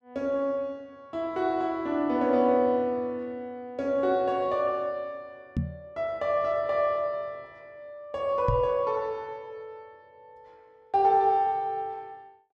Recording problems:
microphone bump; at 5.5 s and at 8.5 s; peak +3 dB vs average level

